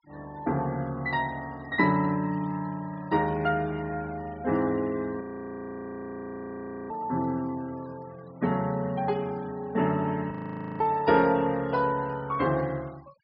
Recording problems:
treble missing; nothing above 5.5 kHz
denoising artefacts; signal-to-artefact ratio 24 dB
audio freezing; at 5 s for 1.5 s and at 10 s

